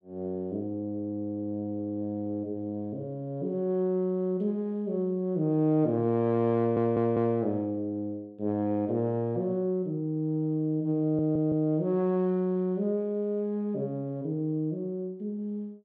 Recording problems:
stutter; at 6.5 s and at 11 s

